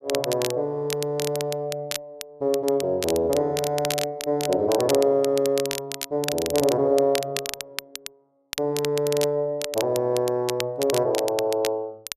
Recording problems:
crackle; vinyl, SNR 9 dB

